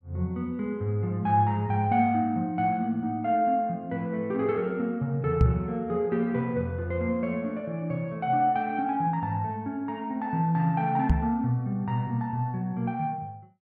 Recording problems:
knock on the microphone; at 5.5 s and at 11 s; peak +9 dB vs average level

